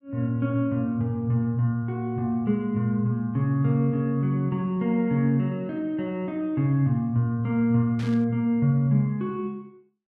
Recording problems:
static burst; at 8 s; peak -13 dB vs average level

